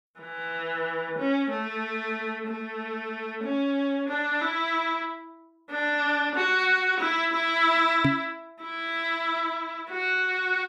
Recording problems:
microphone thump; at 8 s; peak +6 dB vs average level

